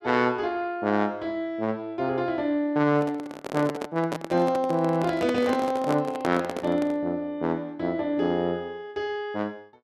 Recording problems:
microphone handling noise; from 3 to 7 s; peak +1 dB vs average level

